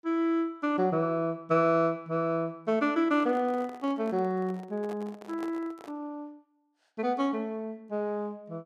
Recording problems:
microphone handling noise; from 3 to 6 s; peak -9 dB vs average level

